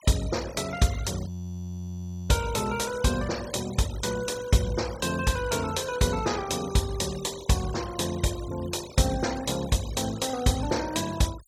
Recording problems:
denoising artefacts; signal-to-artefact ratio 15 dB
audio freezing; at 1.5 s for 1 s

